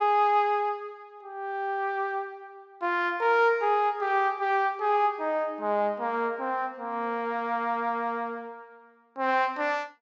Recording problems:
treble cut off; nothing above 8 kHz

